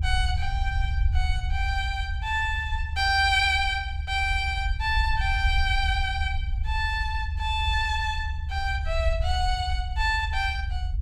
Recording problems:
rumble; below 74 Hz, SNR 3 dB

